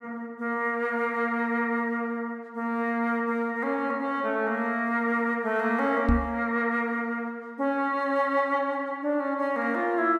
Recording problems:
microphone thump; at 6 s; peak +7 dB vs average level

